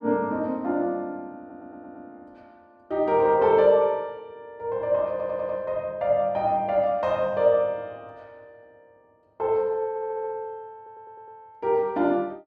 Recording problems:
stutter; 4 times, first at 1.5 s

